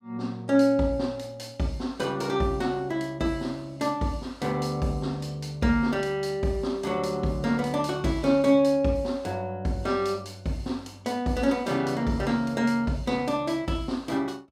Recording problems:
none

